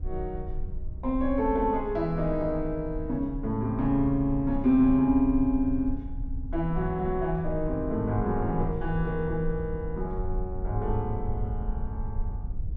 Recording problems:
rumble; below 64 Hz, SNR 9 dB

